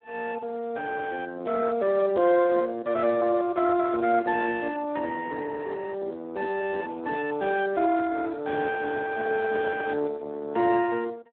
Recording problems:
phone line; 260 Hz to 3.1 kHz, Speex
microphone handling noise; from 8.5 to 10 s; peak -7 dB vs average level

